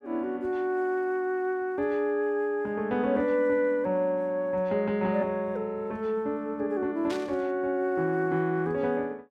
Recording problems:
burst of static; at 7 s; peak -8 dB vs average level

